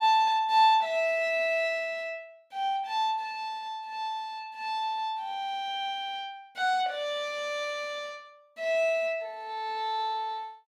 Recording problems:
none

